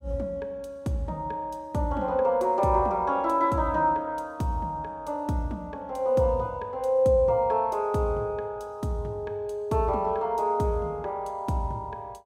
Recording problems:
none

